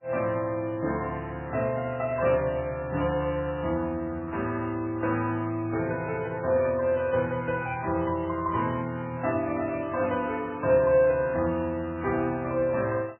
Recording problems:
codec artefacts; MP3, log-spectral distance 3 dB, nothing above 2.5 kHz

